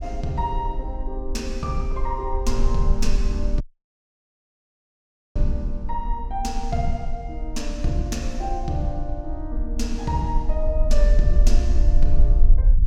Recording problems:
rumble; below 44 Hz, SNR -3 dB
audio cutting out; at 3.5 s for 1.5 s

